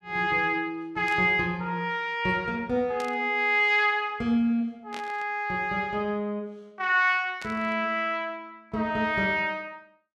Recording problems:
burst of static; 4 times, first at 1 s; peak -10 dB vs average level

